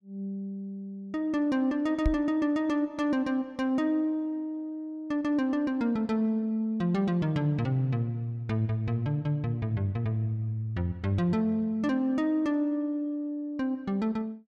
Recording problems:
microphone thump; at 2 s; peak +5 dB vs average level

